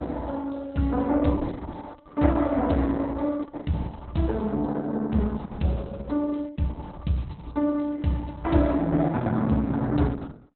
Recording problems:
codec artefacts; Opus, log-spectral distance 4 dB, nothing above 4.1 kHz

